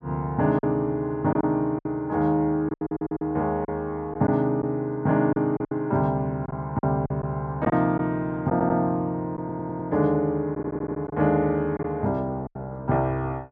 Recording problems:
packet loss; 6% of the sound replaced, filled with silence
audio stuttering; 4 times, first at 3 s

